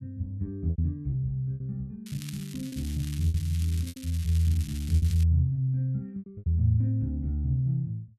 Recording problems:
lost packets; 8% of the sound replaced, filled with repeated pitch periods
crackle; from 2 to 5 s; loose cable, SNR 17 dB

